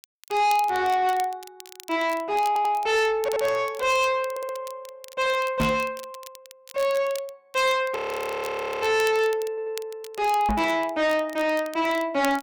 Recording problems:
distortion; soft clipping, signal-to-distortion ratio 10 dB
crackling; vinyl, SNR 19 dB
stutter; 4 times, first at 2.5 s
knock on the microphone; at 5.5 s and at 10 s; peak +4 dB vs average level
audio freezing; at 8 s for 1 s

